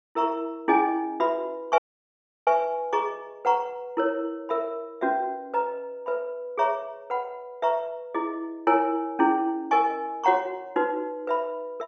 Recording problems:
dropout; at 2 s for 0.5 s

